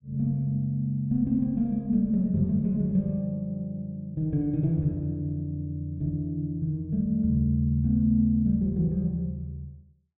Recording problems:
treble cut off; nothing above 4 kHz

